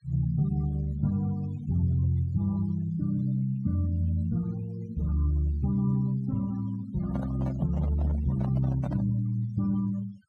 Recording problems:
denoising artefacts; signal-to-artefact ratio 21 dB
microphone handling noise; from 7 to 9 s; peak -6 dB vs average level

